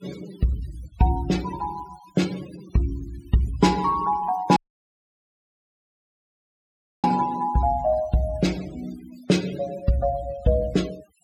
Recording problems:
noise reduction artefacts; signal-to-artefact ratio 18 dB
audio cutting out; at 4.5 s for 2.5 s

